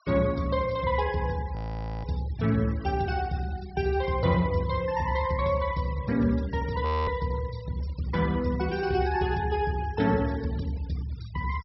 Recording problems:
low-pass filter; nothing above 5.6 kHz
noise reduction artefacts; signal-to-artefact ratio 21 dB
frozen audio; at 1.5 s and at 7 s

